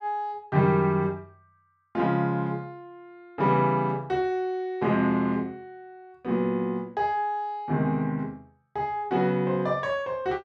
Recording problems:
none

